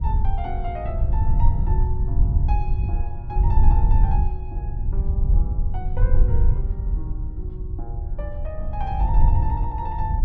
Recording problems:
rumble; below 70 Hz, SNR -11 dB

